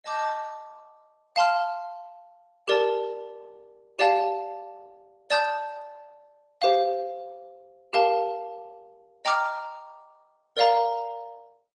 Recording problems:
lossy compression; Opus, then AAC, log-spectral distance 3 dB

